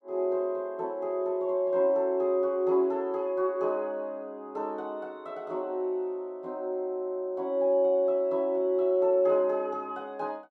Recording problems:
none

